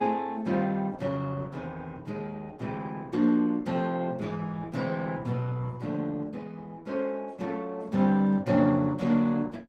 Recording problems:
lossy compression; Opus, log-spectral distance 3 dB, nothing above 17.7 kHz

